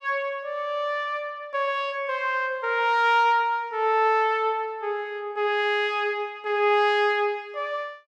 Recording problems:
none

